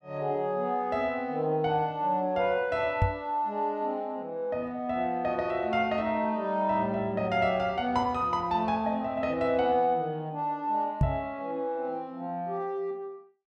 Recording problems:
microphone thump; at 3 s and at 11 s; peak +7 dB vs average level

